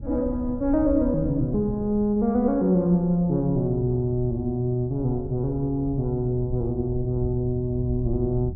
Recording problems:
wind on the microphone; below 90 Hz, SNR 12 dB

